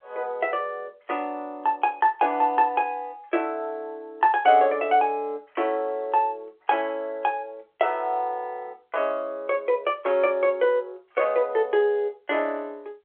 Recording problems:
telephone audio; 320 Hz to 3.4 kHz, G.711

